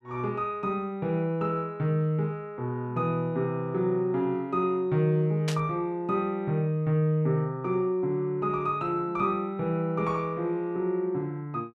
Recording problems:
static burst; at 5.5 s; peak -1 dB vs average level

